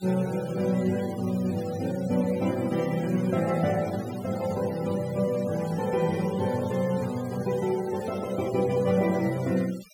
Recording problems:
denoising artefacts; signal-to-artefact ratio 18 dB

